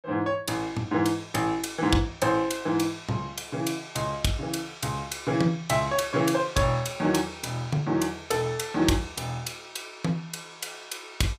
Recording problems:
none

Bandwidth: 15.5 kHz